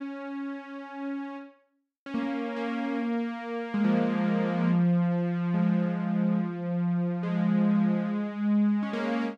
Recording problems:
none

